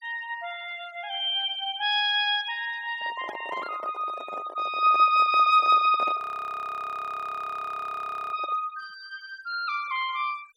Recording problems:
denoising artefacts; signal-to-artefact ratio 23 dB
handling noise; from 3 to 8.5 s; peak -8 dB vs average level
audio freezing; at 6 s for 2 s

